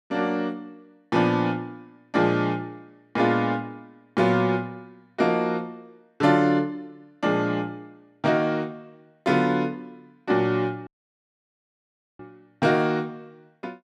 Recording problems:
audio cutting out; at 11 s for 1.5 s

